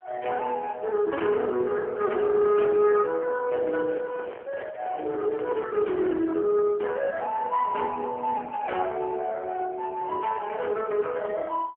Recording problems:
telephone audio; 280 Hz to 3.1 kHz, AMR-NB
microphone handling noise; from 3.5 to 6.5 s; peak -7 dB vs average level

